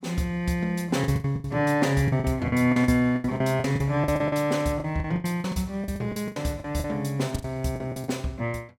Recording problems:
lost packets; 17% of the sound replaced, filled with the last packet

